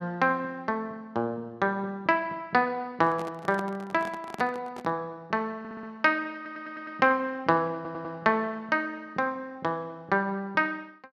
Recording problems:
microphone handling noise; from 3 to 5 s; peak -6 dB vs average level
stutter; at 5.5 s, at 6.5 s and at 8 s

